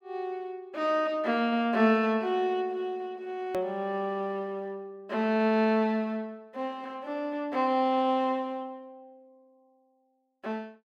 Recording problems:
hard cut with a click; at 3.5 s

